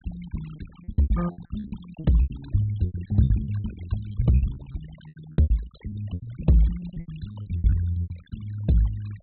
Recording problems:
low-pass filter; nothing above 4 kHz
noise reduction artefacts; signal-to-artefact ratio 22 dB
lost packets; 18% of the sound replaced, filled with repeated pitch periods

